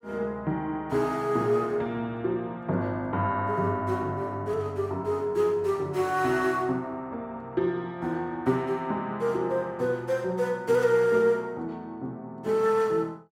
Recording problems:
none

